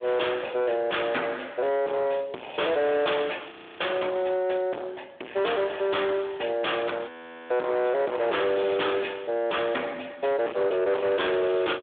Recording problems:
phone line; 280 Hz to 3.6 kHz, Speex
distorted audio; soft clipping, signal-to-distortion ratio 6 dB
frozen audio; at 3.5 s and at 7 s

